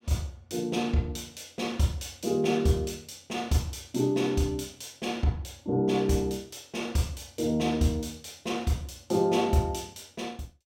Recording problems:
none

